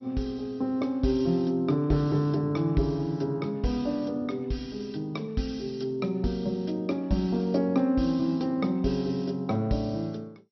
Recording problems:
codec artefacts; MP2, log-spectral distance 2 dB, nothing above 5.8 kHz

